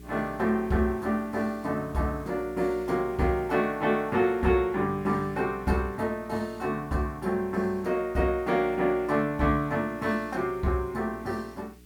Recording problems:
hum; 60 Hz, harmonics up to 420 Hz, SNR 21 dB
background hiss; SNR 30 dB

